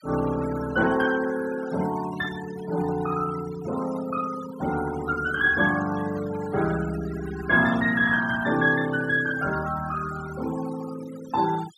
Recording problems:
denoising artefacts; signal-to-artefact ratio 14 dB

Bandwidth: 14 kHz